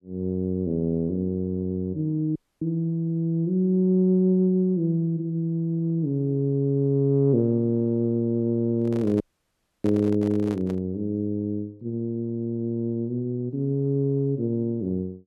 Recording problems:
audio cutting out; at 2.5 s and at 9 s for 0.5 s
handling noise; from 9 to 11 s; peak -8 dB vs average level

